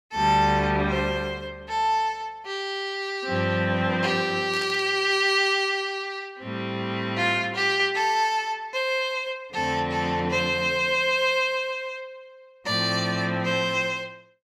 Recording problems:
static burst; at 4.5 s; peak -9 dB vs average level

